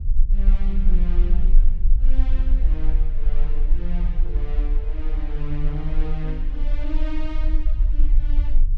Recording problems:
low-frequency rumble; below 36 Hz, strongest tone 18 Hz, SNR -11 dB

